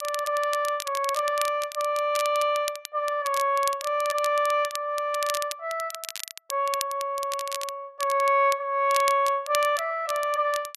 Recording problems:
crackle; vinyl, SNR 11 dB

